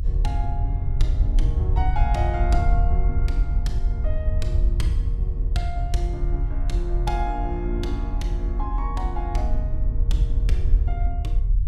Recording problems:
rumble; below 64 Hz, SNR -6 dB

